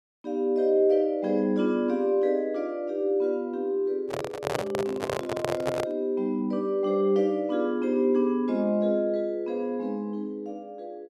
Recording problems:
handling noise; from 4 to 6 s; peak +2 dB vs average level

